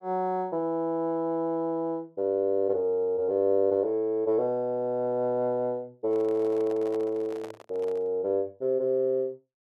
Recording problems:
handling noise; from 6 to 8 s; peak -11 dB vs average level

